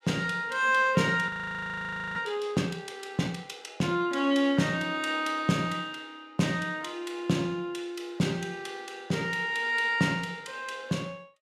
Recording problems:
frozen audio; at 1.5 s for 1 s

